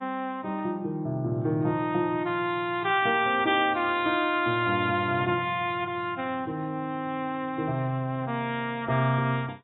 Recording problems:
lossy codec; AAC, log-spectral distance 2 dB, nothing above 3.2 kHz

